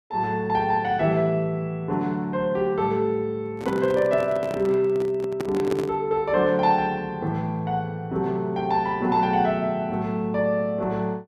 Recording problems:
handling noise; from 3.5 to 6 s; peak -1 dB vs average level

